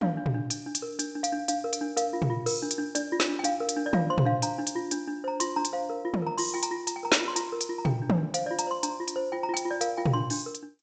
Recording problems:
codec artefacts; G.722, log-spectral distance 4 dB, nothing above 7.6 kHz

